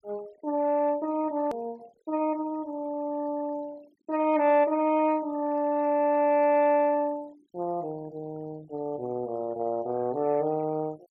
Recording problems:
denoising artefacts; signal-to-artefact ratio 25 dB
edit click; at 1.5 s

